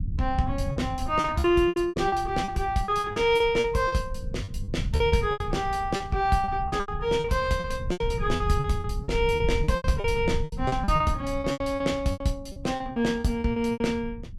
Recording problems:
rumble; below 120 Hz, SNR 9 dB
packet loss; 16% of the sound replaced, filled with repeated pitch periods

